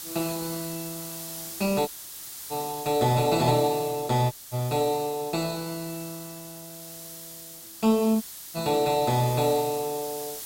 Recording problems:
codec artefacts; Opus, log-spectral distance 3 dB, nothing above 16.1 kHz
background hiss; SNR 11 dB
dropout; at 2 s for 0.5 s, at 4.5 s and at 8 s

